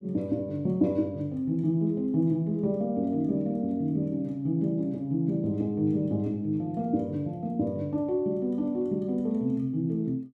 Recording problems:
none

